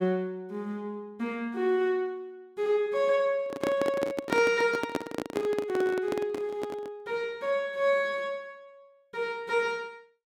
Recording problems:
handling noise; from 3.5 to 7 s; peak +4 dB vs average level

